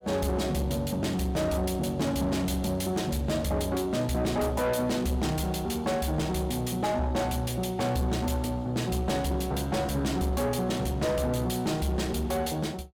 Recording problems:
distorted audio; soft clipping, signal-to-distortion ratio 10 dB

